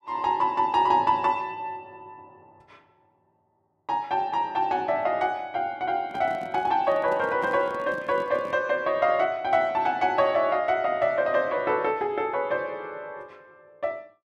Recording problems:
handling noise; from 6 to 8.5 s; peak -9 dB vs average level

